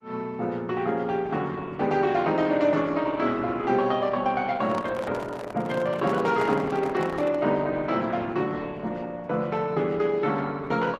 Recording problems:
lossy compression; Opus, log-spectral distance 3 dB
handling noise; from 4.5 to 7.5 s; peak -4 dB vs average level

